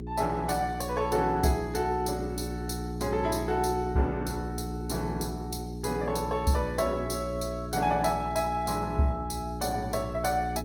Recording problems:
lossy compression; Opus, log-spectral distance 4 dB, nothing above 17.4 kHz
hum; 60 Hz, harmonics up to 420 Hz, SNR 6 dB

